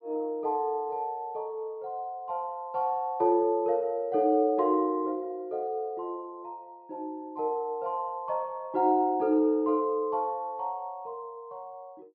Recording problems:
treble cut off; nothing above 5.5 kHz

